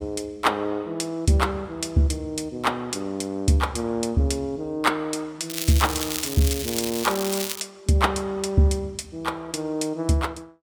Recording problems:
crackle; from 5.5 to 7.5 s; loose cable, SNR 4 dB

